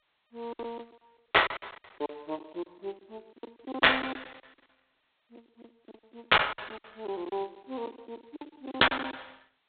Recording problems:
phone line; 280 Hz to 3.8 kHz, G.726
packet loss; 17% of the sound replaced, filled with silence

